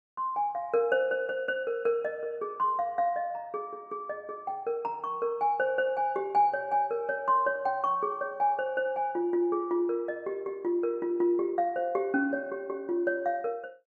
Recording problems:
none

